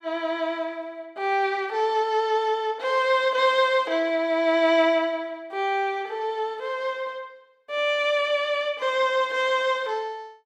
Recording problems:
none

